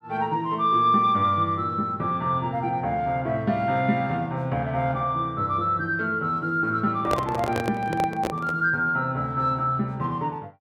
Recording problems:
microphone handling noise; from 7 to 8.5 s; peak +1 dB vs average level

